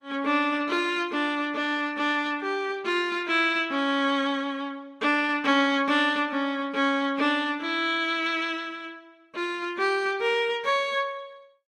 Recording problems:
codec artefacts; Opus, log-spectral distance 2 dB

